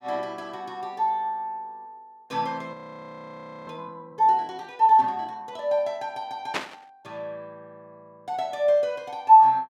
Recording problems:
audio freezing; at 2.5 s for 1 s
burst of static; at 6.5 s; peak +1 dB vs average level

